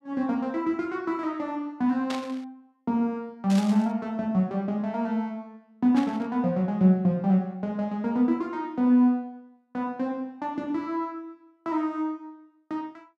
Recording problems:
static burst; at 2 s, at 3.5 s and at 6 s; peak -4 dB vs average level

